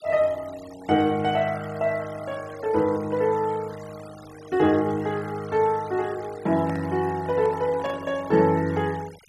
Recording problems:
noise reduction artefacts; signal-to-artefact ratio 22 dB
handling noise; from 6.5 to 8 s; peak -10 dB vs average level

